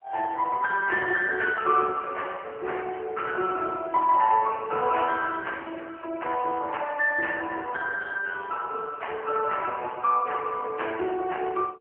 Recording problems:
phone line; 320 Hz to 3.1 kHz, AMR-NB

